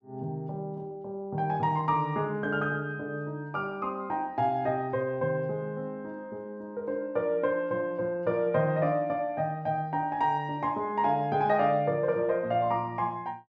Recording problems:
none

